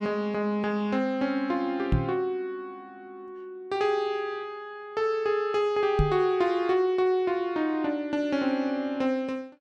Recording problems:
microphone bump; at 2 s and at 6 s; peak +6 dB vs average level

